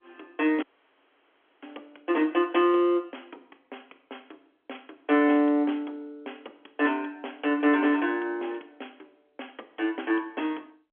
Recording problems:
telephone audio; 240 Hz to 3.4 kHz, G.711
dropout; at 0.5 s for 1 s

